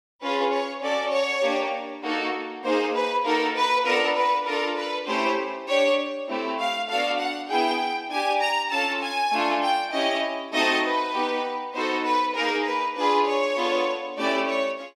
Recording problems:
none

